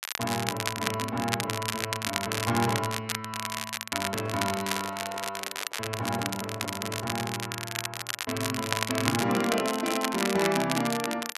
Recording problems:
crackling; vinyl, SNR 2 dB
handling noise; from 4 to 7.5 s; peak -6 dB vs average level

